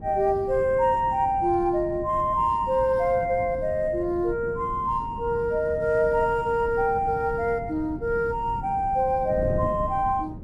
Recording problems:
wind noise; below 220 Hz, SNR 13 dB

